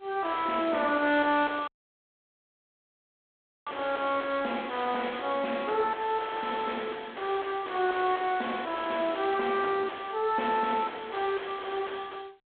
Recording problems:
telephone audio; 300 Hz to 3.4 kHz, G.726
distortion; soft clipping, signal-to-distortion ratio 7 dB
audio cutting out; at 1.5 s for 2 s

